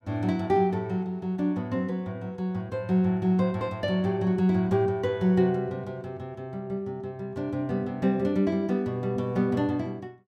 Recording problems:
none

